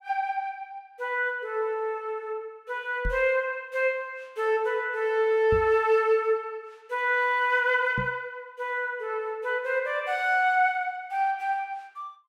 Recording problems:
microphone bump; at 3 s, at 5.5 s and at 8 s; peak -2 dB vs average level

